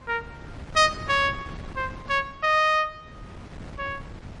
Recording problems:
lossy codec; MP3, log-spectral distance 2 dB, nothing above 10.1 kHz
wind noise; below 440 Hz, SNR 17 dB

